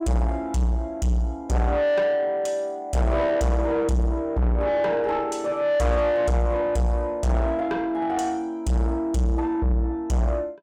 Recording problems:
distortion; soft clipping, signal-to-distortion ratio 6 dB

